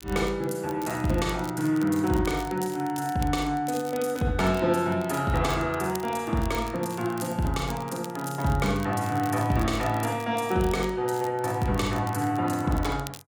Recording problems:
crackling; vinyl, SNR 19 dB

